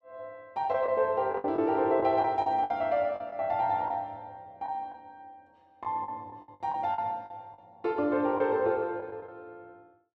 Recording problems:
packet loss; 9% of the sound replaced, filled with the last packet

